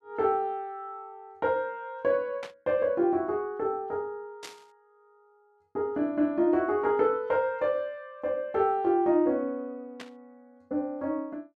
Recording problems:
static burst; at 2.5 s, at 4.5 s and at 10 s; peak -8 dB vs average level

